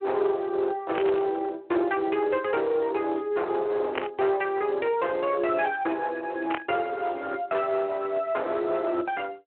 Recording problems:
telephone audio; 280 Hz to 3.1 kHz, Speex
distorted audio; hard clipping, signal-to-distortion ratio 13 dB
burst of static; at 1 s, at 4 s and at 6.5 s; peak +2 dB vs average level

